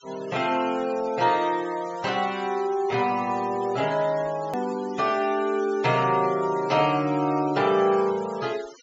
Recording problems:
treble missing; nothing above 7.4 kHz
denoising artefacts; signal-to-artefact ratio 19 dB
click at an edit; at 4.5 s

